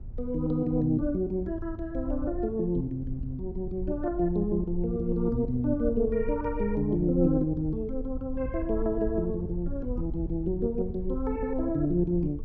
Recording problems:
rumble; below 68 Hz, SNR 10 dB

